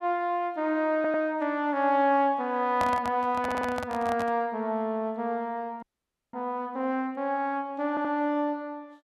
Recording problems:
stutter; at 1 s, at 3.5 s and at 8 s
handling noise; from 2.5 to 4.5 s; peak -1 dB vs average level
audio freezing; at 6 s for 0.5 s

